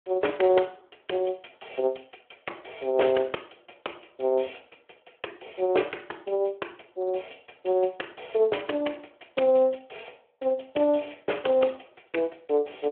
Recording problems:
phone line; 300 Hz to 3.4 kHz, Speex

